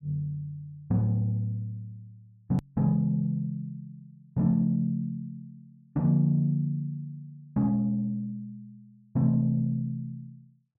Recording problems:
hard cut with a click; at 2.5 s

